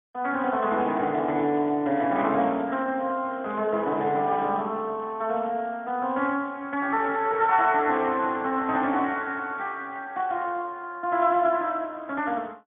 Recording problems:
low-pass filter; nothing above 3.5 kHz
lossy compression; Speex, log-spectral distance 3 dB

